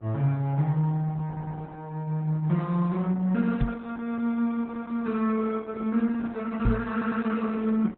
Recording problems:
lossy codec; AAC, then Opus, log-spectral distance 2 dB, nothing above 4 kHz
hum; 60 Hz, harmonics up to 1.4 kHz, SNR 30 dB
audio stuttering; at 1.5 s and at 7 s
microphone bump; at 3.5 s and at 6.5 s; peak +7 dB vs average level

